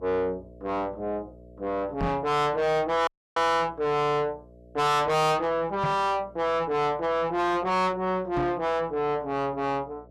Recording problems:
distorted audio; soft clipping, signal-to-distortion ratio 6 dB
electrical hum; 60 Hz, harmonics up to 660 Hz, SNR 25 dB
microphone thump; at 2 s, at 6 s and at 8.5 s; peak +2 dB vs average level
audio cutting out; at 3 s

